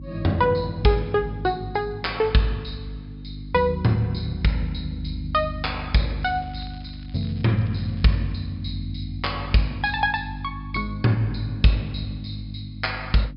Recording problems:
treble missing; nothing above 5.5 kHz
hum; 50 Hz, harmonics up to 300 Hz, SNR 11 dB
crackling; from 6 to 8 s; loose cable, SNR 27 dB

